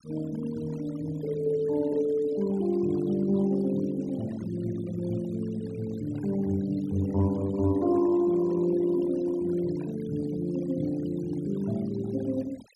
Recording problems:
denoising artefacts; signal-to-artefact ratio 21 dB

